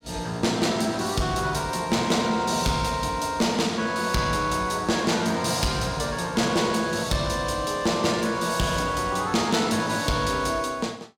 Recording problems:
distorted audio; soft clipping, signal-to-distortion ratio 12 dB

